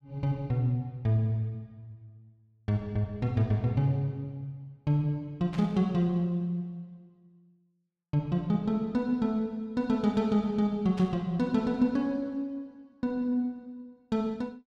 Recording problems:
burst of static; at 5.5 s and at 11 s; peak -11 dB vs average level

